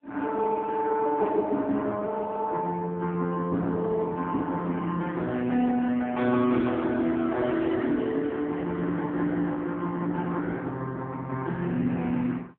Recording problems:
phone line; 190 Hz to 3.5 kHz, AMR-NB

